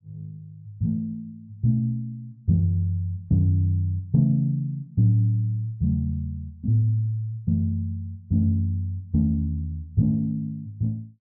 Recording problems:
treble missing; nothing above 7.3 kHz

